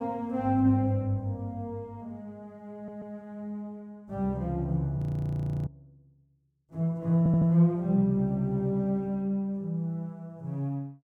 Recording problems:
audio stuttering; at 3 s and at 7 s
audio freezing; at 5 s for 0.5 s

